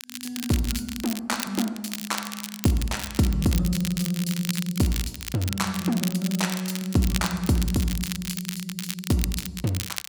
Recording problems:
crackle; vinyl, SNR 7 dB

